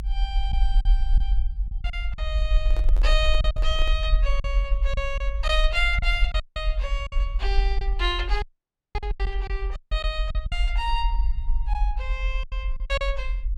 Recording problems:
low-frequency rumble; below 48 Hz, SNR -3 dB
lost packets; 7% of the sound replaced, filled with silence
microphone handling noise; from 2.5 to 4 s; peak -7 dB vs average level
audio cutting out; at 6.5 s, at 8.5 s for 0.5 s and at 10 s

